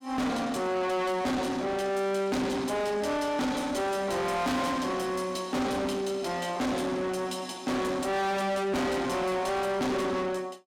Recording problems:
distortion; soft clipping, signal-to-distortion ratio 6 dB

